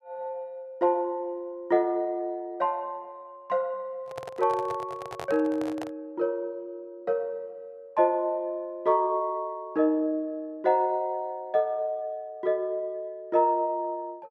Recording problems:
microphone handling noise; from 4 to 6 s; peak -4 dB vs average level

